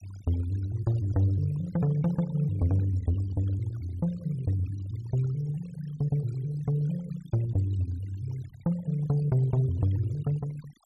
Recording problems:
denoising artefacts; signal-to-artefact ratio 21 dB

